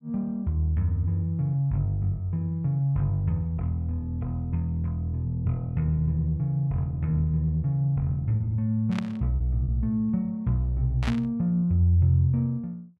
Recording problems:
lost packets; 0.9% of the sound replaced, filled with repeated pitch periods
burst of static; at 9 s and at 11 s; peak -4 dB vs average level

